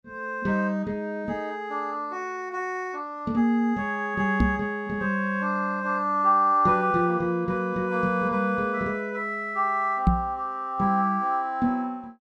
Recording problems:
microphone bump; at 4.5 s and at 10 s; peak +8 dB vs average level

